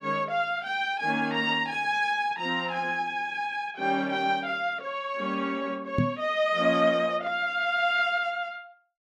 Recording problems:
microphone bump; at 6 s; peak +5 dB vs average level

